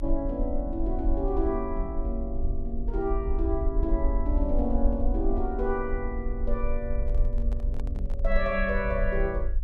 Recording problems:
rumble; below 48 Hz, strongest tone 24 Hz, SNR 0 dB
microphone handling noise; from 7 to 8.5 s; peak -10 dB vs average level

